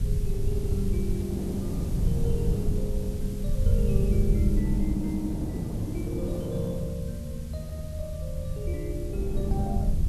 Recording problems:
hiss; slope +1 dB per octave, SNR 16 dB
low-frequency rumble; below 100 Hz, SNR -2 dB
wind on the microphone; below 320 Hz, SNR 3 dB

